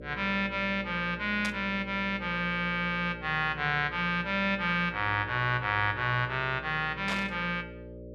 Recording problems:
electrical hum; 60 Hz, harmonics up to 600 Hz, SNR 15 dB
burst of static; at 1.5 s and at 7 s; peak -2 dB vs average level

